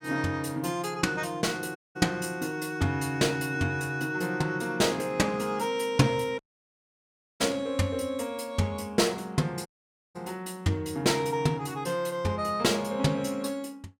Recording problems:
audio cutting out; at 2 s, at 6.5 s for 1 s and at 9.5 s

